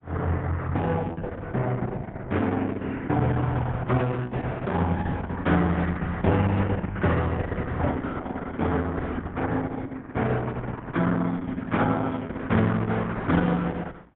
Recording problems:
treble cut off; nothing above 4 kHz
lossy compression; Opus, log-spectral distance 3 dB

